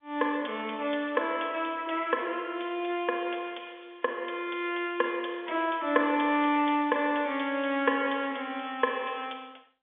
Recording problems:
phone line; 240 Hz to 3.6 kHz, G.711

